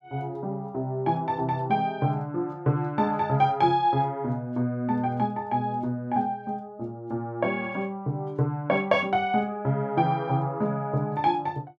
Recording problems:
none

